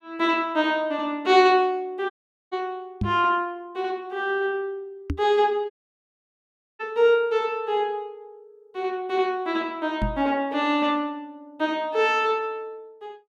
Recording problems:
audio cutting out; at 2 s and at 5.5 s for 1 s
microphone thump; at 3 s, at 5 s and at 10 s; peak +1 dB vs average level

